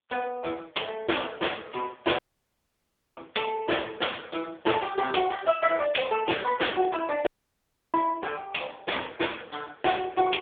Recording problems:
telephone audio; 280 Hz to 3.5 kHz, AMR-NB
audio cutting out; at 2 s for 1 s and at 7.5 s for 0.5 s

